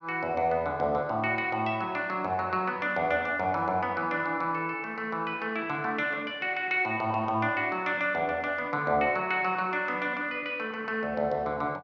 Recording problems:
none

